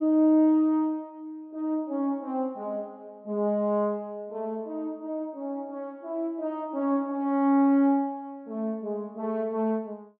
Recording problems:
none

